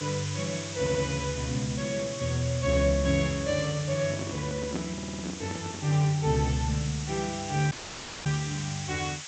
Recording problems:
treble cut off; nothing above 8 kHz
hiss; SNR 9 dB
audio stuttering; at 1 s and at 5 s
handling noise; from 4 to 6 s; peak 0 dB vs average level
dropout; at 7.5 s for 0.5 s

